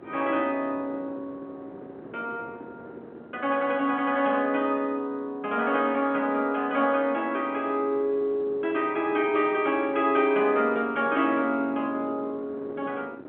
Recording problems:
phone line; 300 Hz to 3.3 kHz, G.711
wind noise; below 540 Hz, SNR 20 dB

